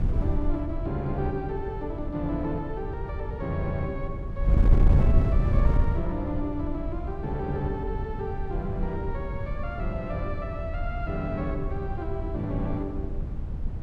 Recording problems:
wind on the microphone; below 110 Hz, SNR -3 dB

